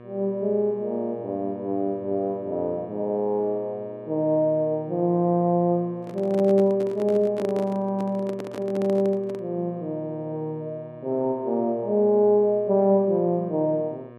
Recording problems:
hum; 60 Hz, harmonics up to 2.4 kHz, SNR 20 dB
handling noise; from 6 to 9.5 s; peak -7 dB vs average level

